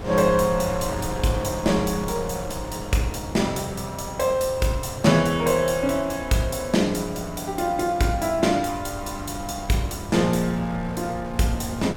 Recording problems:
wind on the microphone; below 530 Hz, SNR 12 dB

